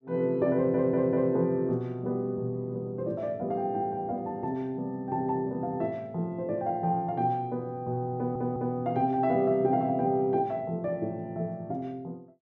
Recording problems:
stutter; at 0.5 s and at 8 s

